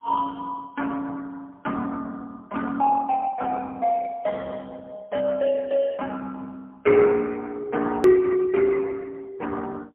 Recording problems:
telephone audio; 240 Hz to 2.6 kHz, AMR-NB, then MP3
edit click; at 8 s

